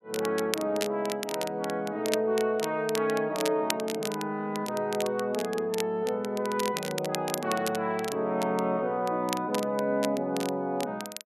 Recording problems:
crackling; vinyl, SNR 9 dB

